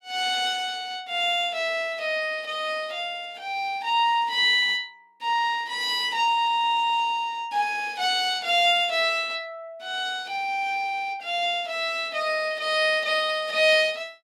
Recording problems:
none

